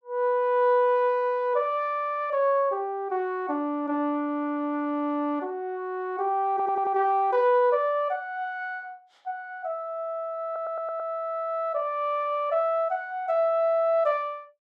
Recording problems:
audio stuttering; at 6.5 s and at 10 s

